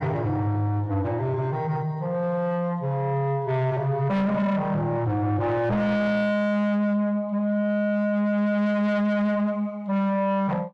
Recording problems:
distorted audio; soft clipping, signal-to-distortion ratio 7 dB

